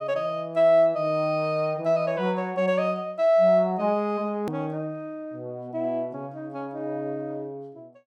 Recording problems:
hard cut with a click; at 4.5 s

